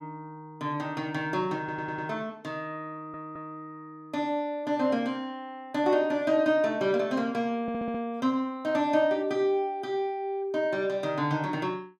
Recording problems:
audio stuttering; at 1.5 s, at 3 s and at 7.5 s

